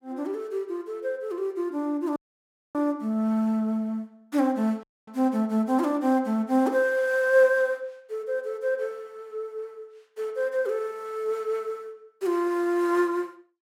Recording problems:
audio cutting out; at 2 s for 0.5 s and at 5 s

